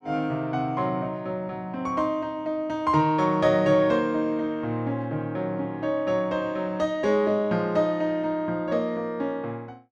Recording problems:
none

